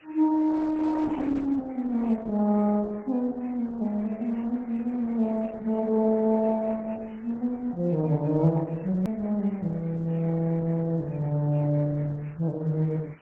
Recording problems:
codec artefacts; MP3, then Opus, log-spectral distance 5 dB, nothing above 18.3 kHz
background hiss; SNR 29 dB
edit click; at 9 s

